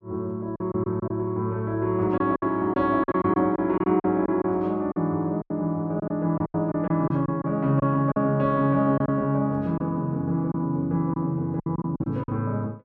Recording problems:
packet loss; 9% of the sound replaced, filled with silence

